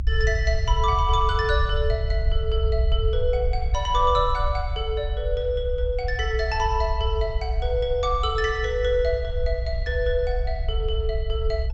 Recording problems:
low-pass filter; nothing above 8 kHz
rumble; below 64 Hz, SNR 2 dB

